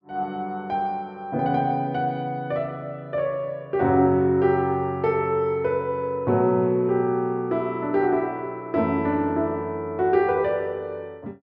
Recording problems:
none

